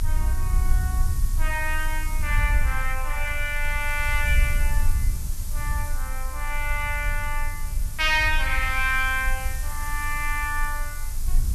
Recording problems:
hiss; SNR 12 dB
low-frequency rumble; below 58 Hz, strongest tone 22 Hz, SNR 2 dB

